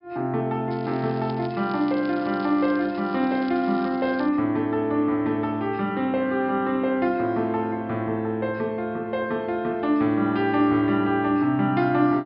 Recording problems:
treble cut off; nothing above 5.5 kHz
crackling; from 0.5 to 4.5 s; loose cable, SNR 24 dB

